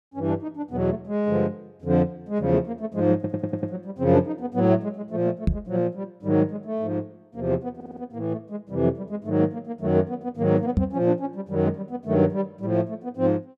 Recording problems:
audio stuttering; at 3 s and at 8 s
knock on the microphone; at 5.5 s and at 11 s; peak +7 dB vs average level

